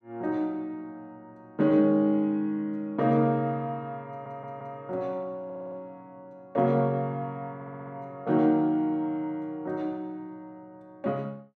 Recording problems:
stutter; at 4 s, at 5.5 s and at 7.5 s

